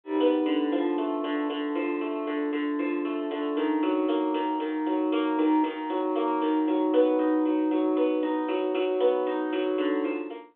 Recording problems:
telephone audio; 260 Hz to 3.7 kHz, G.726

